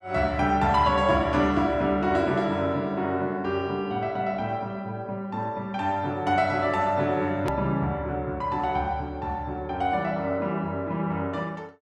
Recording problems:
hard cut with a click; at 7.5 s

